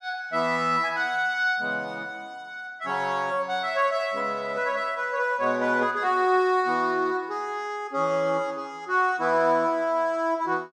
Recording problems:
none

